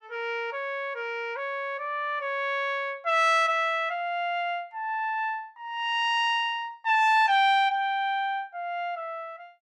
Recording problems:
none

